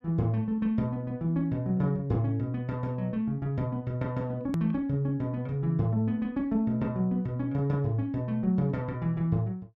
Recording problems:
edit click; at 4.5 s

